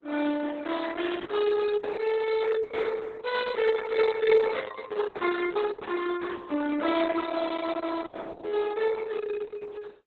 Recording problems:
lossy codec; Opus, then Opus, log-spectral distance 5 dB, nothing above 4 kHz

